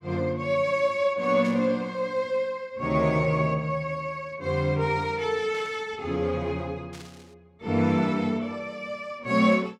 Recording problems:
burst of static; at 1.5 s, at 5.5 s and at 7 s; peak -14 dB vs average level

